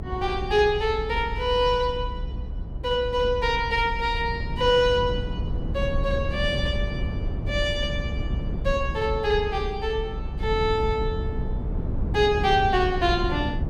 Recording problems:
low-frequency rumble; below 130 Hz, SNR 6 dB

